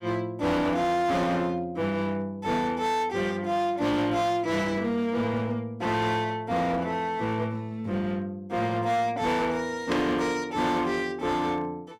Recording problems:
distorted audio; hard clipping, uneven, signal-to-distortion ratio 10 dB
burst of static; at 10 s; peak -1 dB vs average level

